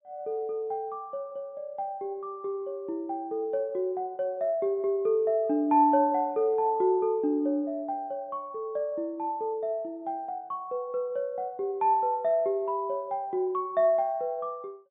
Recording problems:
treble cut off; nothing above 4 kHz

